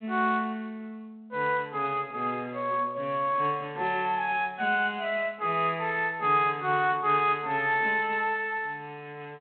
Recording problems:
telephone audio; 260 Hz to 3.7 kHz, G.726

